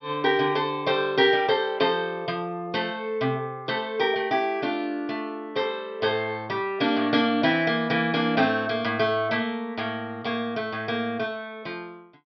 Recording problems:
treble cut off; nothing above 5.5 kHz

